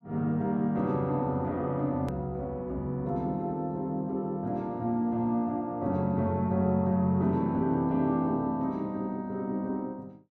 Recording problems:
edit click; at 2 s

